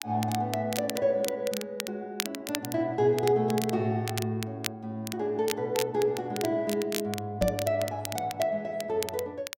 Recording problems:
crackling; vinyl, SNR 9 dB
microphone thump; at 7.5 s; peak +2 dB vs average level

